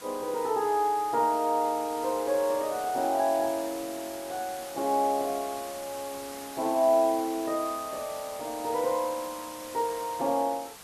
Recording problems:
background hiss; slope -1 dB per octave, SNR 14 dB

